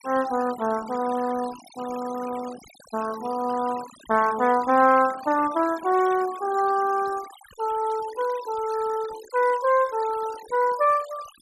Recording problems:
denoising artefacts; signal-to-artefact ratio 18 dB

